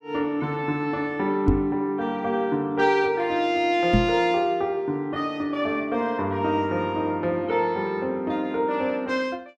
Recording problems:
microphone bump; at 1.5 s and at 4 s; peak +7 dB vs average level

